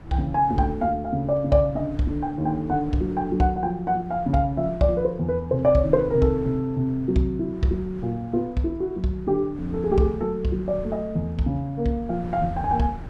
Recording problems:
wind on the microphone; below 210 Hz, SNR 16 dB

